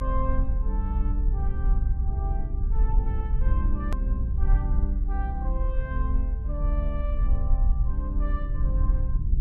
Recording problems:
mains hum; 60 Hz, harmonics up to 360 Hz, SNR 15 dB
low-frequency rumble; below 60 Hz, strongest tone 38 Hz, SNR -10 dB
click at an edit; at 4 s

